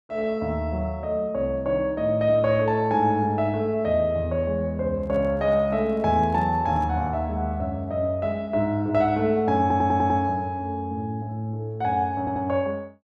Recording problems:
microphone handling noise; from 5 to 7 s; peak -12 dB vs average level
stutter; at 9.5 s and at 12 s

